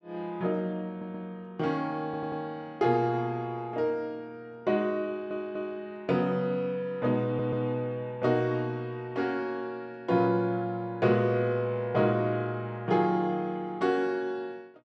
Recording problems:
stutter; 4 times, first at 1 s

